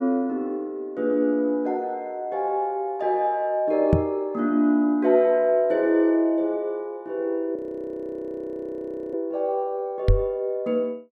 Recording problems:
microphone bump; at 4 s and at 10 s; peak +8 dB vs average level
frozen audio; at 7.5 s for 1.5 s

